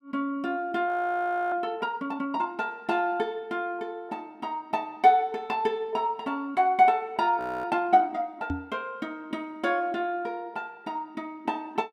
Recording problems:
audio freezing; at 1 s for 0.5 s and at 7.5 s
knock on the microphone; at 8.5 s; peak 0 dB vs average level

